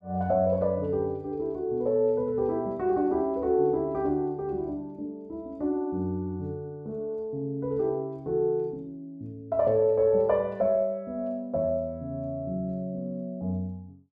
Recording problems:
none

